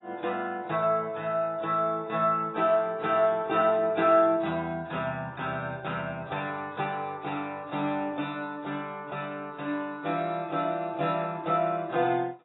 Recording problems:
codec artefacts; AAC, log-spectral distance 2 dB, nothing above 3.8 kHz

